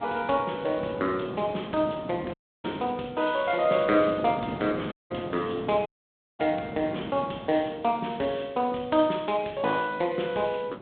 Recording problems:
phone line; 170 Hz to 3.9 kHz, G.726
wind noise; below 570 Hz, SNR 12 dB
audio cutting out; at 2.5 s, at 5 s and at 6 s for 0.5 s

